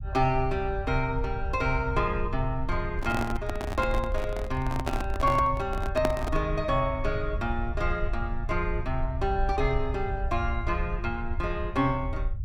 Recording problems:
rumble; below 70 Hz, SNR 5 dB
microphone handling noise; from 3 to 6.5 s; peak +5 dB vs average level

